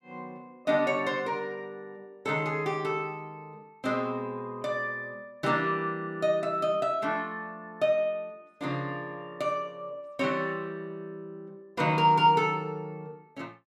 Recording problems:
none

